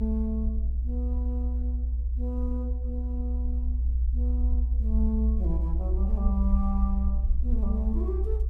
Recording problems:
rumble; below 62 Hz, strongest tone 60 Hz, SNR -7 dB
wind on the microphone; below 160 Hz, SNR 17 dB

